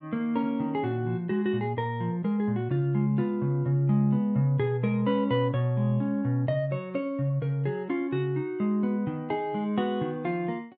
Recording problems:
none

